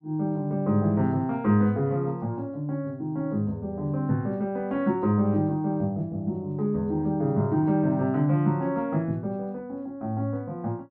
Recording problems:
none

